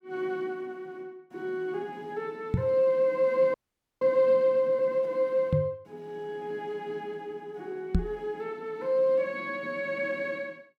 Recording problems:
knock on the microphone; at 2.5 s, at 5.5 s and at 8 s; peak +7 dB vs average level
frozen audio; at 3.5 s

